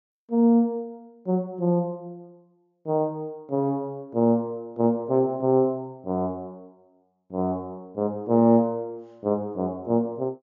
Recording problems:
treble missing; nothing above 7.4 kHz

